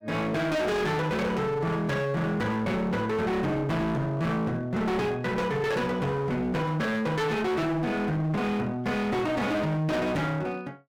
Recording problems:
distortion; hard clipping, uneven, signal-to-distortion ratio 6 dB

